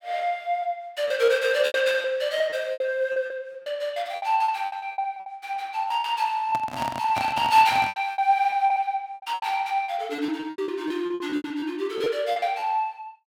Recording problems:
lost packets; 15% of the sound replaced, filled with repeated pitch periods
handling noise; from 6.5 to 8 s; peak -2 dB vs average level

